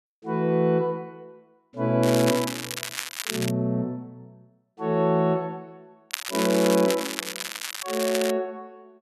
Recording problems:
crackling; from 2 to 3.5 s and from 6 to 8.5 s; loose cable, SNR 6 dB

